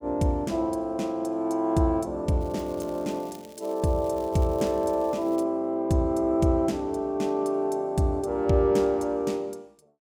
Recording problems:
crackle; from 2.5 to 5.5 s; loose cable, SNR 26 dB

